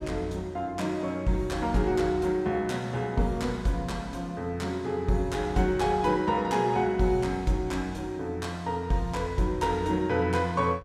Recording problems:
none

